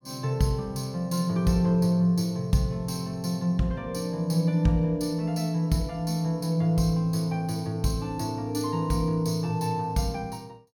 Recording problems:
none

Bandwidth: 17.5 kHz